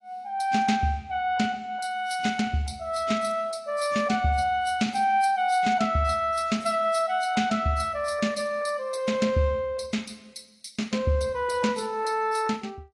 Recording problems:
lossy compression; AAC, log-spectral distance 3 dB, nothing above 10.7 kHz

